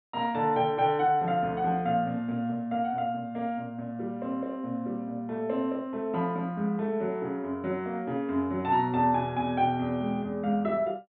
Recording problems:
treble missing; nothing above 4 kHz

